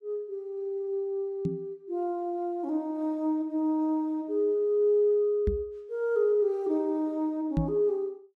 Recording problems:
knock on the microphone; at 1.5 s, at 5.5 s and at 7.5 s; peak +4 dB vs average level

